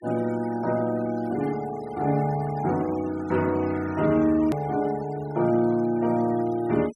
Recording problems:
noise reduction artefacts; signal-to-artefact ratio 22 dB
hard cut with a click; at 4.5 s

